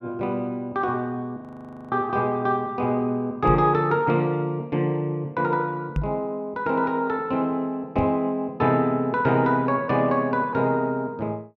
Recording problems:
audio freezing; at 1.5 s for 0.5 s
microphone thump; at 3.5 s, at 6 s and at 8 s; peak +1 dB vs average level

